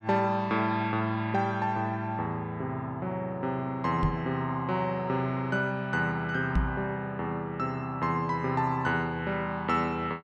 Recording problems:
microphone thump; at 4 s and at 6.5 s; peak +5 dB vs average level

